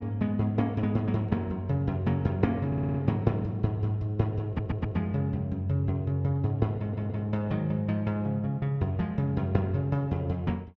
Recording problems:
stutter; at 2.5 s, at 4.5 s and at 7 s

